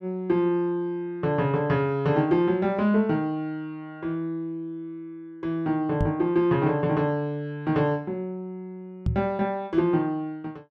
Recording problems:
microphone thump; at 6 s and at 9 s; peak +3 dB vs average level

